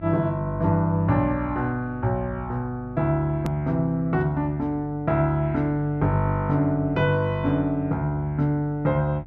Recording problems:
hum; 50 Hz, harmonics up to 500 Hz, SNR 18 dB
click at an edit; at 3.5 s

